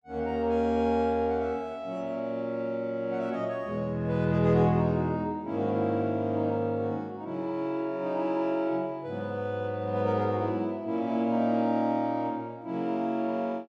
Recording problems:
none

